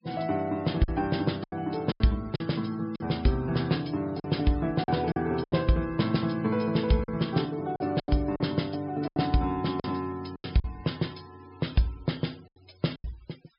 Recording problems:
treble cut off; nothing above 5.5 kHz
noise reduction artefacts; signal-to-artefact ratio 24 dB
packet loss; 8% of the sound replaced, filled with silence

